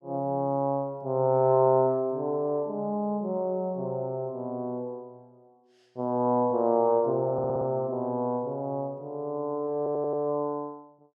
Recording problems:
stutter; at 7.5 s and at 10 s

